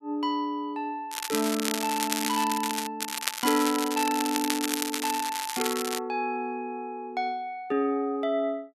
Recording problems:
crackle; from 1 to 3 s and from 3 to 6 s; loose cable, SNR 2 dB

